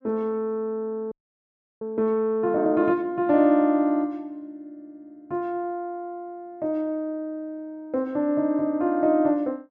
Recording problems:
frozen audio; at 1 s for 0.5 s

